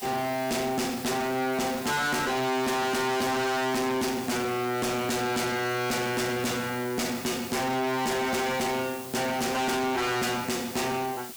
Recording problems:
distorted audio; soft clipping, signal-to-distortion ratio 6 dB
hiss; slope +1 dB per octave, SNR 15 dB

